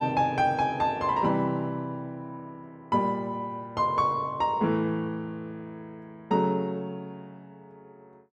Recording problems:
none

